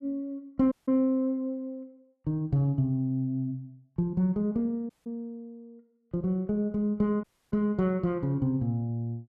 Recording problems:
audio cutting out; at 0.5 s, at 5 s and at 7 s

